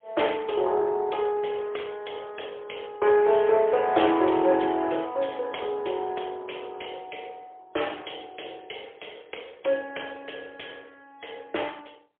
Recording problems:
phone line; 280 Hz to 3.4 kHz, AMR-NB, then MP3

